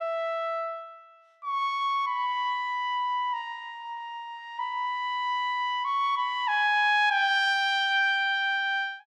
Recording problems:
none

